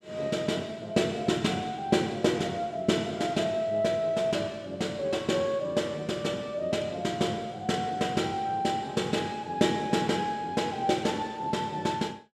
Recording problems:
none

